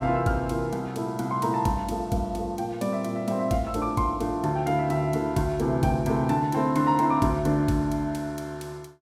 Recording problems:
none

